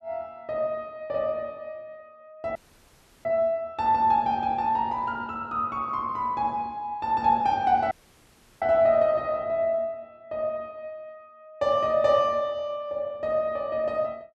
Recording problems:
audio cutting out; at 2.5 s for 0.5 s and at 8 s for 0.5 s

